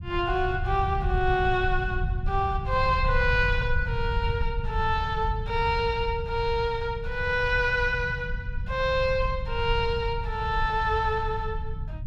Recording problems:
low-frequency rumble; below 92 Hz, SNR 6 dB

